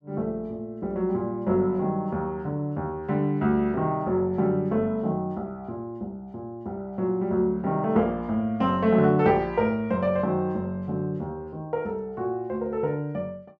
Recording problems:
none

